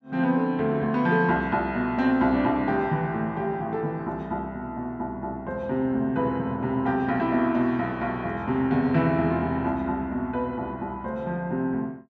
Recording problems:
none

